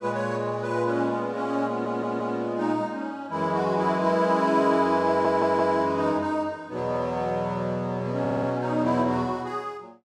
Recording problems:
stutter; at 1.5 s, at 5 s and at 8 s

